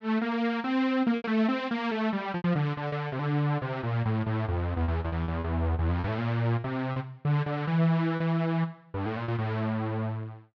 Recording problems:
packet loss; 6% of the sound replaced, filled with repeated pitch periods

